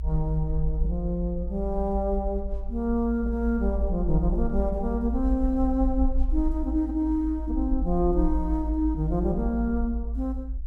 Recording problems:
rumble; below 56 Hz, SNR 3 dB

